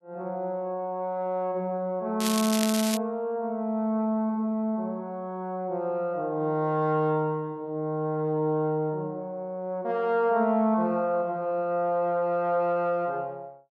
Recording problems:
crackling; at 2 s; loose cable, SNR 4 dB

